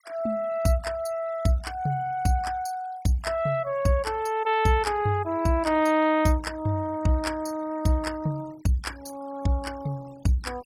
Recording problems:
noise reduction artefacts; signal-to-artefact ratio 23 dB

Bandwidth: 17.5 kHz